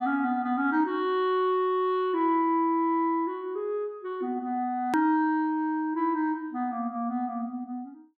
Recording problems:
hard cut with a click; at 5 s

